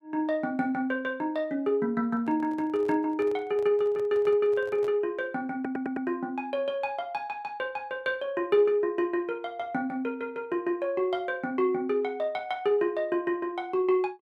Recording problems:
handling noise; from 2 to 5 s; peak -11 dB vs average level
audio stuttering; at 5.5 s

